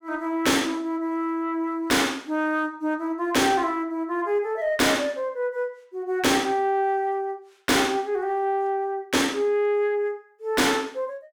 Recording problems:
distorted audio; soft clipping, signal-to-distortion ratio 7 dB

